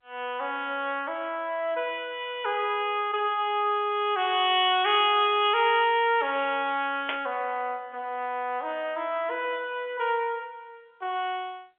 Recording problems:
telephone audio; 320 Hz to 3.4 kHz, G.711
burst of static; at 7 s; peak +1 dB vs average level

